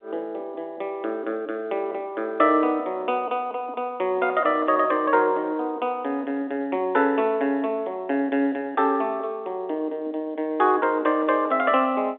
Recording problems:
phone line; 240 Hz to 3.7 kHz, G.711

